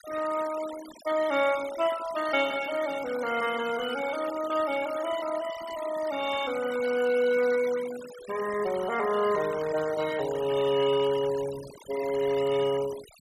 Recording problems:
noise reduction artefacts; signal-to-artefact ratio 14 dB

